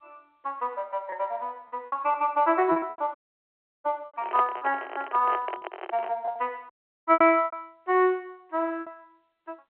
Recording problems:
phone line; 320 Hz to 3.3 kHz, G.711
lost packets; 11% of the sound replaced, filled with repeated pitch periods
dropout; at 3 s for 0.5 s and at 6.5 s
microphone handling noise; from 4 to 6 s; peak 0 dB vs average level

